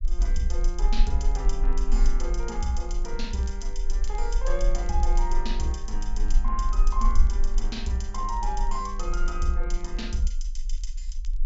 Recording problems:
low-pass filter; nothing above 8 kHz
rumble; below 36 Hz, strongest tone 20 Hz, SNR -3 dB
crackling; vinyl, SNR 29 dB

